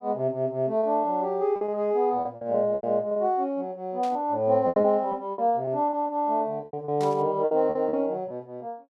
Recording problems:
lost packets; 10% of the sound replaced, filled with repeated pitch periods
burst of static; at 4 s and at 7 s; peak -13 dB vs average level

